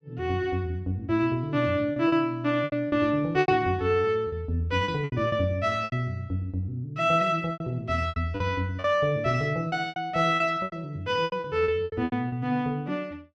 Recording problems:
packet loss; 11% of the sound replaced, filled with repeated pitch periods

